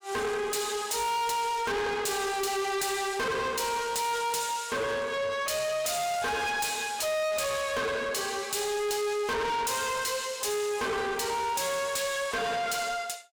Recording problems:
distorted audio; soft clipping, signal-to-distortion ratio 6 dB

